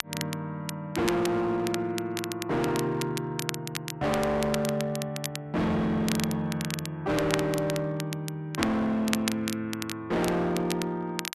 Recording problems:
distorted audio; hard clipping, signal-to-distortion ratio 7 dB
crackle; vinyl, SNR 8 dB

